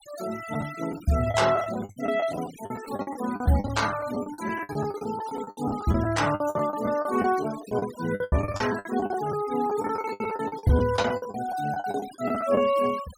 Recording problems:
denoising artefacts; signal-to-artefact ratio 15 dB
lost packets; 18% of the sound replaced, filled with the last packet

